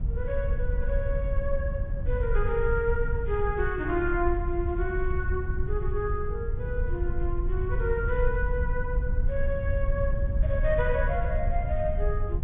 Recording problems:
treble cut off; nothing above 3.6 kHz
rumble; below 70 Hz, SNR -1 dB

